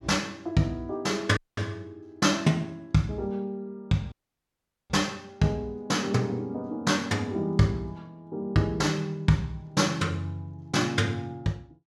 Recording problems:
audio cutting out; at 1.5 s and at 4 s for 1 s

